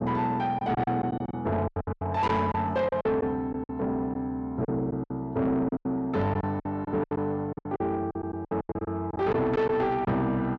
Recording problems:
distorted audio; soft clipping, signal-to-distortion ratio 11 dB
packet loss; 14% of the sound replaced, filled with silence

